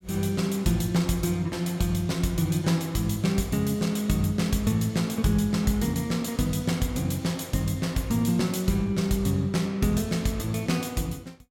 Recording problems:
none

